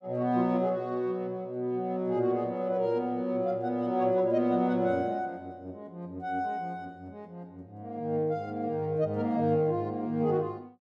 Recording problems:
none

